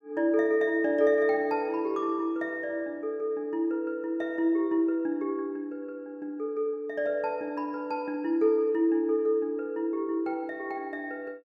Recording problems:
none

